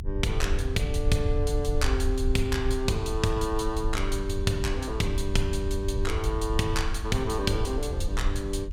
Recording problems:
hum; 50 Hz, harmonics up to 750 Hz, SNR 21 dB
rumble; below 74 Hz, SNR 2 dB

